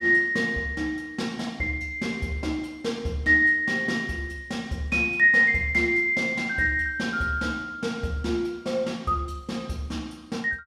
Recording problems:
none

